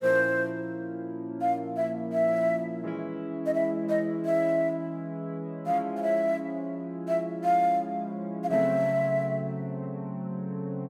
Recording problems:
none

